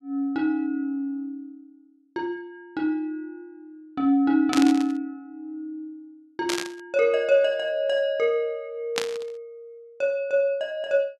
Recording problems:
static burst; at 4.5 s, at 6.5 s and at 9 s; peak +3 dB vs average level

